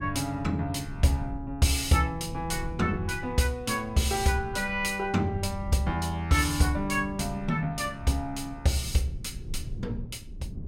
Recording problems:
rumble; below 120 Hz, SNR 13 dB

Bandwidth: 16 kHz